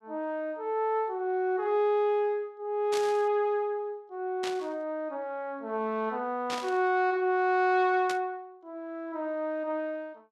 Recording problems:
static burst; 4 times, first at 3 s; peak -3 dB vs average level

